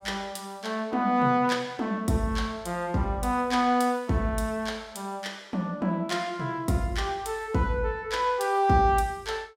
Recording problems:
none

